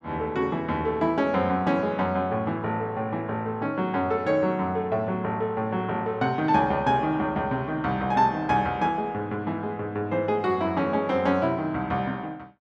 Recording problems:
none

